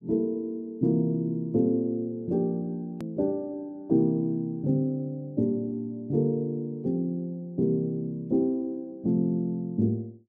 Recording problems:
hard cut with a click; at 3 s

